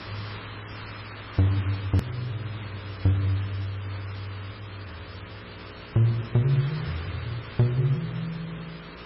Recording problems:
lossy codec; MP3, log-spectral distance 10 dB, nothing above 13.1 kHz
hum; 60 Hz, harmonics up to 660 Hz, SNR 20 dB
background hiss; SNR 14 dB
click at an edit; at 2 s

